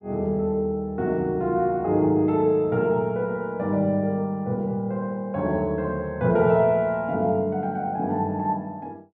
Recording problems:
none

